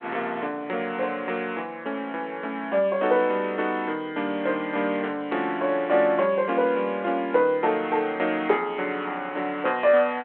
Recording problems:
phone line; 240 Hz to 3.4 kHz, G.726

